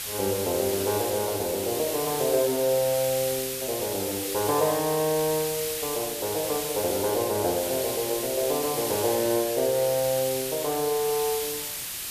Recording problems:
background hiss; slope +2 dB per octave, SNR 4 dB

